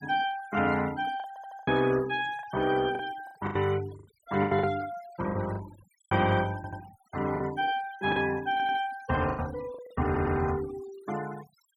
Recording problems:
noise reduction artefacts; signal-to-artefact ratio 17 dB
packet loss; 9% of the sound replaced, filled with the last packet
stutter; 4 times, first at 1.5 s

